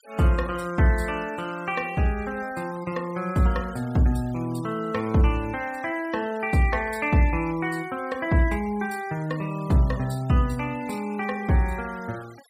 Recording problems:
denoising artefacts; signal-to-artefact ratio 22 dB

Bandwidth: 15.5 kHz